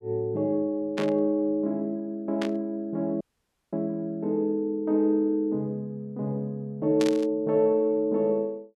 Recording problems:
burst of static; at 1 s, at 2.5 s and at 7 s; peak -3 dB vs average level
audio cutting out; at 3 s for 0.5 s

